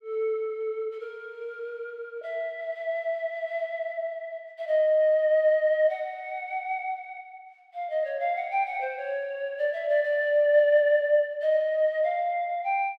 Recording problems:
none

